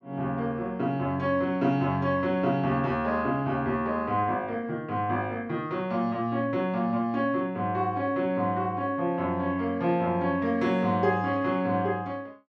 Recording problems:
none

